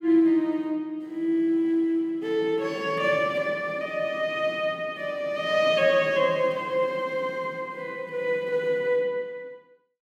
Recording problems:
none

